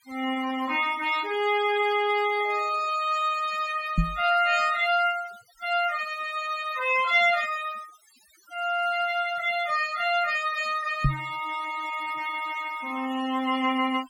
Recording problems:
noise reduction artefacts; signal-to-artefact ratio 18 dB
microphone bump; at 4 s and at 11 s; peak +5 dB vs average level

